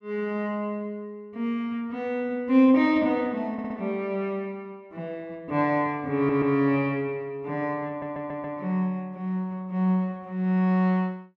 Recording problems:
audio stuttering; at 3.5 s, at 6 s and at 8 s

